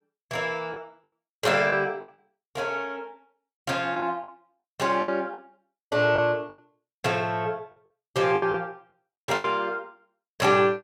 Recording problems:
lost packets; 8% of the sound replaced, filled with the last packet

